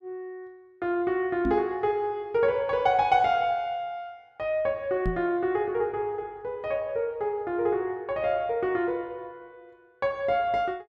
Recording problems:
knock on the microphone; at 1.5 s and at 5 s; peak +1 dB vs average level

